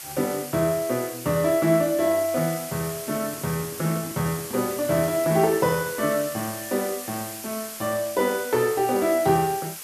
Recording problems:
hiss; slope +1 dB per octave, SNR 10 dB
handling noise; from 3 to 5.5 s; peak -10 dB vs average level

